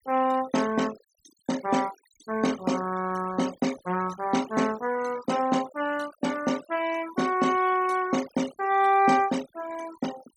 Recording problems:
denoising artefacts; signal-to-artefact ratio 16 dB

